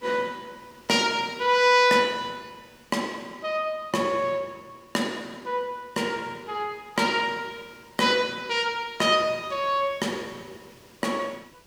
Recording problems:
background hiss; slope -2 dB per octave, SNR 29 dB

